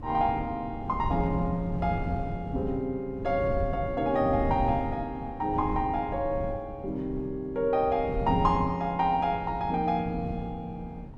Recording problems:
wind on the microphone; below 180 Hz, SNR 8 dB

